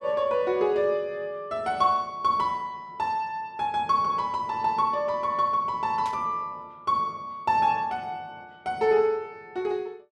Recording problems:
static burst; at 6 s; peak -12 dB vs average level

